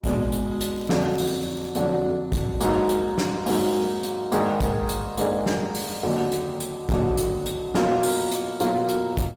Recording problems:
lossy codec; Opus, log-spectral distance 4 dB, nothing above 18.5 kHz
distorted audio; hard clipping, uneven, signal-to-distortion ratio 10 dB
crackle; from 0.5 to 1.5 s; loose cable, SNR 24 dB

